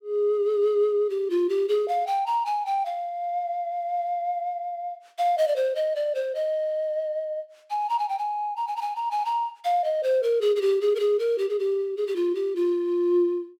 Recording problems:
none

